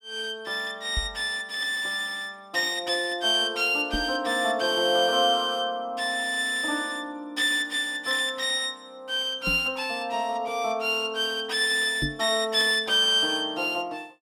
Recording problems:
microphone bump; 4 times, first at 1 s; peak -1 dB vs average level

